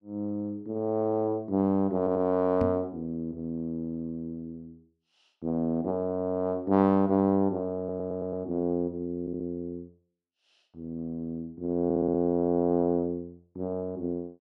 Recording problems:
audio stuttering; 4 times, first at 2 s
microphone bump; at 2.5 s; peak +1 dB vs average level

